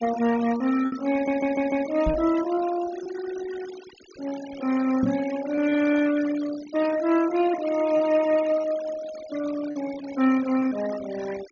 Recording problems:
low-pass filter; nothing above 6.8 kHz
noise reduction artefacts; signal-to-artefact ratio 15 dB
packet loss; 3% of the sound replaced, filled with repeated pitch periods
audio stuttering; at 1 s
microphone thump; at 2 s and at 5 s; peak +2 dB vs average level

